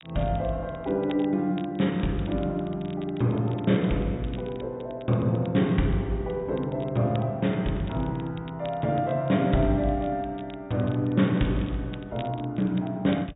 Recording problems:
low-pass filter; nothing above 4 kHz
crackle; vinyl, SNR 24 dB

